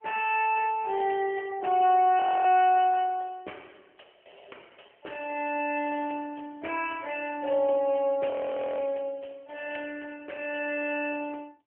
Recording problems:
phone line; 320 Hz to 3.1 kHz, AMR-NB
frozen audio; at 2 s and at 8.5 s

